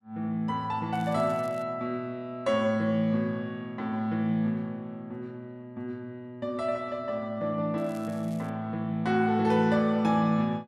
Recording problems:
crackling; at 1 s and at 8 s; loose cable, SNR 26 dB

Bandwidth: 12.5 kHz